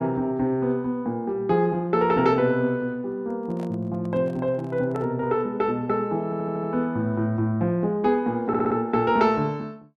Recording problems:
handling noise; from 3 to 5 s; peak -10 dB vs average level
stutter; at 6 s and at 8.5 s

